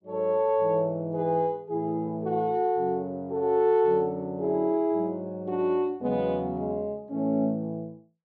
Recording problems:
none

